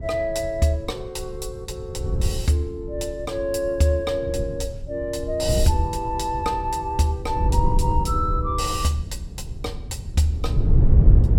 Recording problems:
wind on the microphone; below 100 Hz, SNR 1 dB

